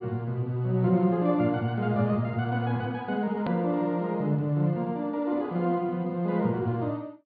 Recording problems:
treble missing; nothing above 4.7 kHz
hard cut with a click; at 3.5 s

